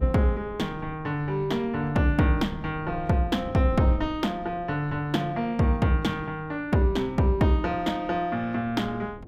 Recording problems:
wind on the microphone; below 190 Hz, SNR 18 dB

